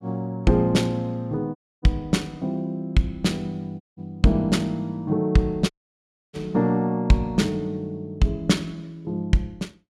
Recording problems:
dropout; at 1.5 s, at 4 s and at 5.5 s for 0.5 s

